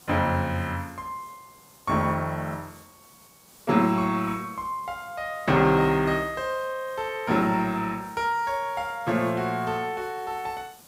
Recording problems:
background hiss; SNR 25 dB

